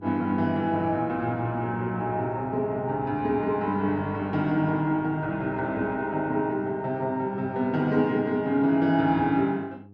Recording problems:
mains hum; 50 Hz, harmonics up to 800 Hz, SNR 22 dB

